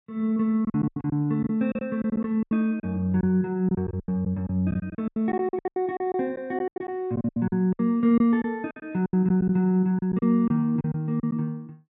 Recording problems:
packet loss; 15% of the sound replaced, filled with silence

